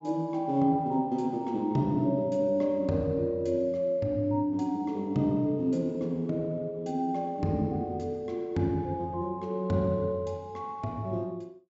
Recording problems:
treble cut off; nothing above 8 kHz

